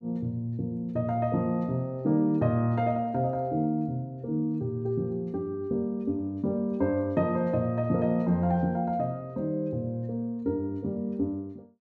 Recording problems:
none

